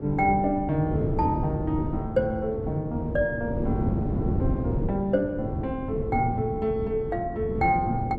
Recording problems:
wind noise; below 280 Hz, SNR 3 dB

